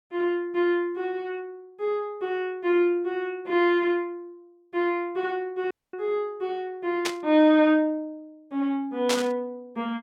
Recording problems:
audio cutting out; at 5.5 s
static burst; at 7 s and at 9 s; peak +3 dB vs average level

